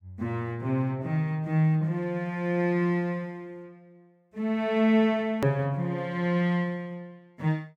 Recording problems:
edit click; at 5.5 s

